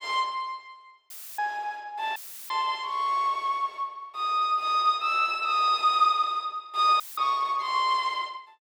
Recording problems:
dropout; at 1 s, at 2 s and at 7 s; filled with static

